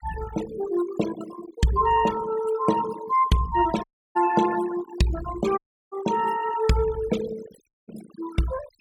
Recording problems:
denoising artefacts; signal-to-artefact ratio 14 dB
dropout; at 4 s, at 5.5 s and at 7.5 s

